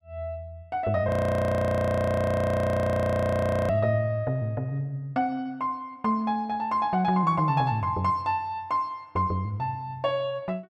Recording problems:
audio freezing; at 1 s for 2.5 s

